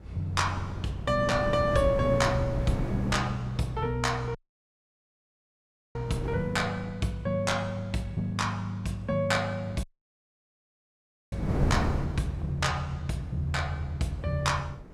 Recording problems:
wind on the microphone; below 320 Hz, SNR 6 dB
dropout; at 4.5 s for 1.5 s and at 10 s for 1.5 s

